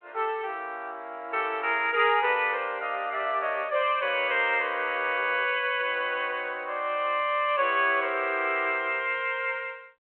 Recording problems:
telephone audio; 300 Hz to 3.2 kHz, G.726

